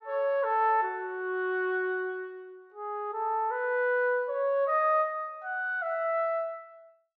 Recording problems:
none

